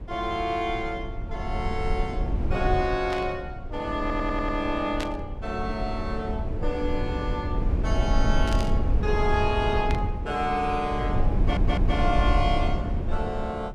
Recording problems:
rumble; below 96 Hz, SNR 1 dB
static burst; 4 times, first at 3 s; peak -1 dB vs average level
audio stuttering; at 4 s and at 11 s

